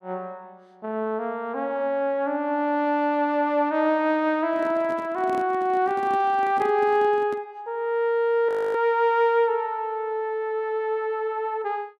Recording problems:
microphone handling noise; from 4.5 to 7.5 s; peak -8 dB vs average level
audio freezing; at 8.5 s

